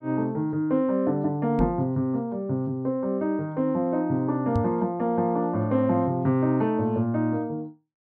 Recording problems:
knock on the microphone; at 1.5 s and at 4.5 s; peak +4 dB vs average level

